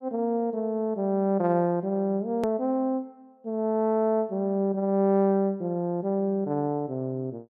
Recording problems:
edit click; at 2.5 s

